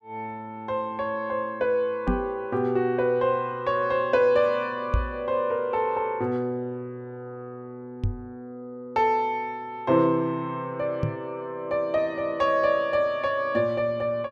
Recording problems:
microphone bump; 4 times, first at 2 s; peak +4 dB vs average level

